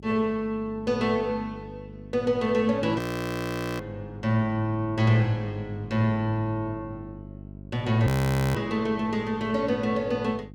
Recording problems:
electrical hum; 50 Hz, harmonics up to 600 Hz, SNR 17 dB
frozen audio; at 3 s for 1 s and at 8 s

